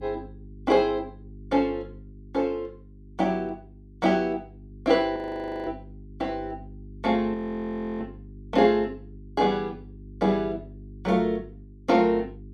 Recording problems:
hum; 50 Hz, harmonics up to 400 Hz, SNR 19 dB
frozen audio; at 5 s for 0.5 s and at 7.5 s for 0.5 s

